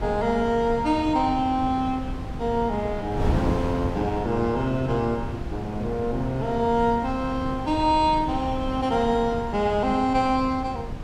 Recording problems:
wind noise; below 260 Hz, SNR 8 dB

